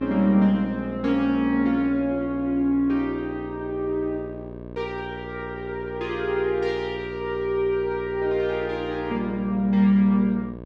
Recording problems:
electrical hum; 60 Hz, harmonics up to 1.2 kHz, SNR 13 dB

